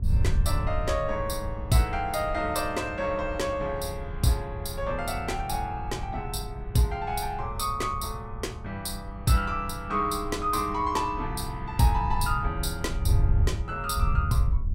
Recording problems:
hum; 50 Hz, harmonics up to 700 Hz, SNR 18 dB
wind noise; below 94 Hz, SNR 4 dB

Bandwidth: 16 kHz